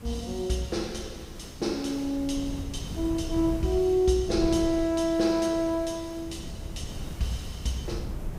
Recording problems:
hiss; slope -4 dB per octave, SNR 21 dB
wind on the microphone; below 150 Hz, SNR 11 dB

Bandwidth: 15.5 kHz